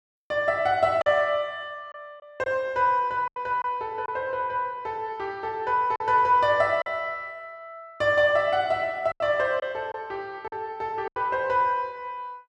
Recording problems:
packet loss; 4% of the sound replaced, filled with silence

